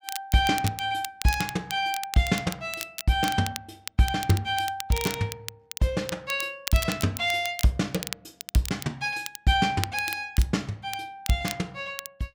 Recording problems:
crackling; vinyl, SNR 10 dB

